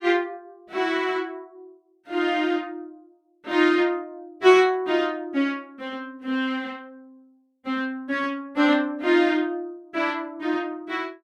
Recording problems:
none

